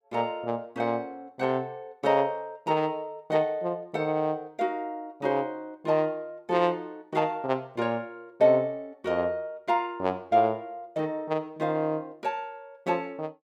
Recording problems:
none

